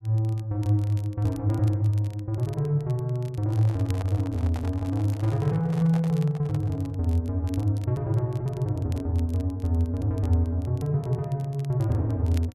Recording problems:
crackling; vinyl, SNR 27 dB
microphone handling noise; from 3.5 to 7 s; peak -8 dB vs average level

